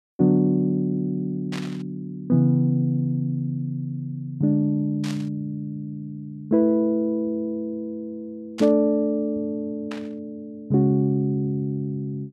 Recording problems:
burst of static; 4 times, first at 1.5 s; peak -7 dB vs average level

